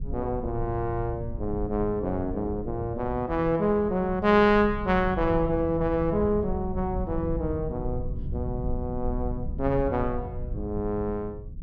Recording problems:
rumble; below 110 Hz, SNR 9 dB

